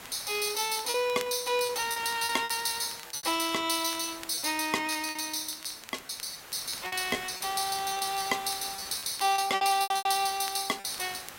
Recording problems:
hiss; slope -2 dB per octave, SNR 15 dB
crackle; vinyl, SNR 20 dB
packet loss; 11% of the sound replaced, filled with repeated pitch periods

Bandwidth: 16 kHz